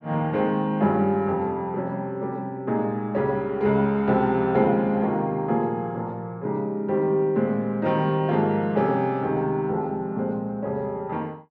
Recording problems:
none

